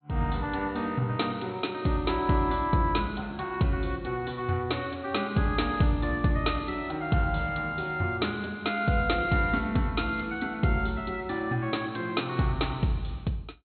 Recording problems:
treble missing; nothing above 4.2 kHz

